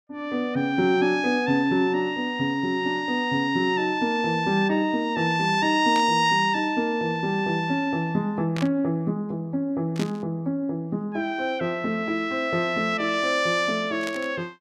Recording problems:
static burst; 4 times, first at 6 s; peak -6 dB vs average level

